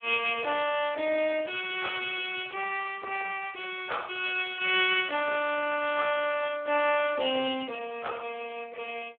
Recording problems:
phone line; 320 Hz to 3.5 kHz, Speex

